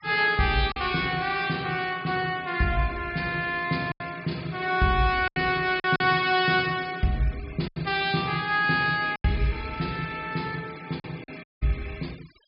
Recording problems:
low-pass filter; nothing above 5.3 kHz
denoising artefacts; signal-to-artefact ratio 22 dB
packet loss; 4% of the sound replaced, filled with silence
dropout; at 11 s

